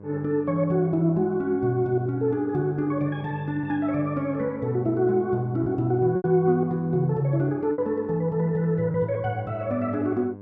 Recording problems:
hum; 50 Hz, harmonics up to 1.1 kHz, SNR 18 dB
packet loss; 2% of the sound replaced, filled with repeated pitch periods

